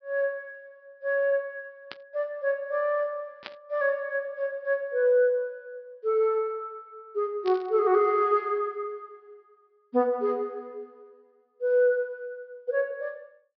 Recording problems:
treble cut off; nothing above 5.5 kHz
static burst; at 2 s, at 3.5 s and at 7.5 s; peak -7 dB vs average level

